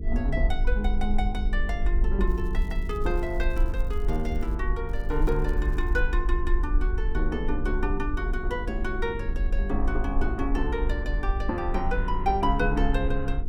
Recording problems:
electrical hum; 50 Hz, harmonics up to 450 Hz, SNR 9 dB
low-frequency rumble; below 48 Hz, SNR 0 dB
crackle; from 2.5 to 4.5 s and from 5 to 6 s; loose cable, SNR 27 dB

